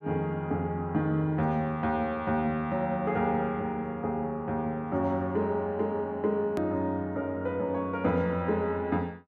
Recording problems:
click at an edit; at 6.5 s

